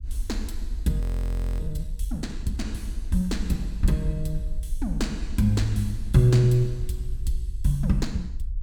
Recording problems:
rumble; below 52 Hz, SNR 8 dB
audio freezing; at 1 s for 0.5 s

